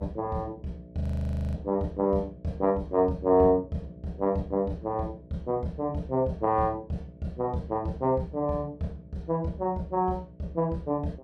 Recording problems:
electrical hum; 60 Hz, harmonics up to 660 Hz, SNR 24 dB
frozen audio; at 1 s for 0.5 s

